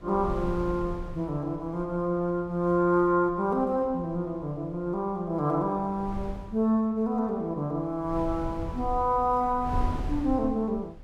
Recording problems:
wind on the microphone; below 120 Hz, SNR 11 dB

